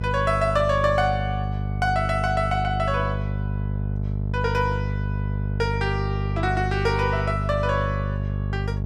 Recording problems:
hum; 50 Hz, harmonics up to 650 Hz, SNR 2 dB

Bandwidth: 14 kHz